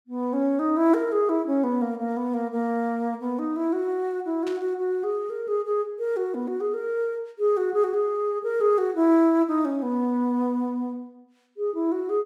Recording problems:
static burst; at 4.5 s; peak -12 dB vs average level

